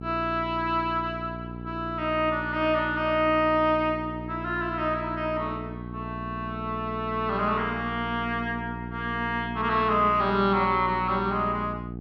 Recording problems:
hum; 60 Hz, harmonics up to 840 Hz, SNR 10 dB

